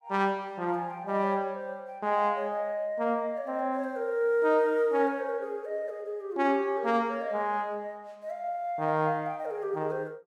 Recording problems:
none

